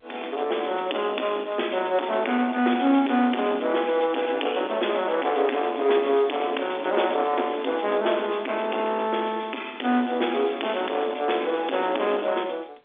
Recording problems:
phone line; 240 Hz to 3.6 kHz, G.711
distortion; soft clipping, signal-to-distortion ratio 10 dB

